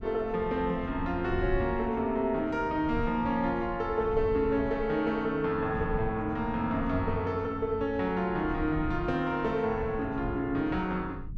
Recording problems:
rumble; below 110 Hz, SNR 12 dB

